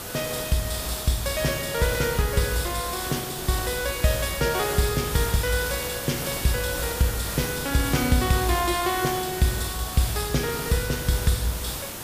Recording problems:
background hiss; slope -3 dB per octave, SNR 5 dB

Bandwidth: 15 kHz